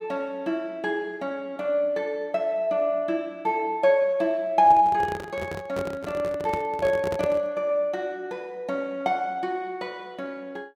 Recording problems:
handling noise; from 4.5 to 7.5 s; peak -2 dB vs average level

